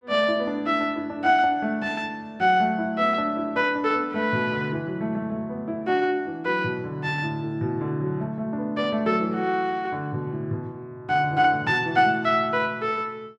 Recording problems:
none

